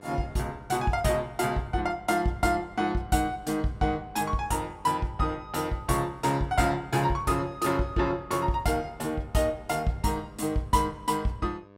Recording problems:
electrical hum; 50 Hz, harmonics up to 2.2 kHz, SNR 26 dB

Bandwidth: 16 kHz